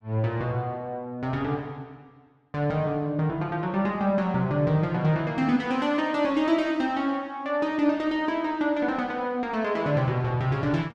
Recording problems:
none

